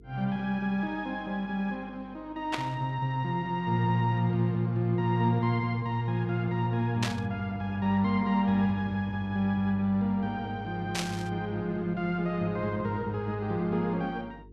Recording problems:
hum; 50 Hz, harmonics up to 450 Hz, SNR 24 dB
static burst; at 2.5 s, at 7 s and at 11 s; peak +1 dB vs average level

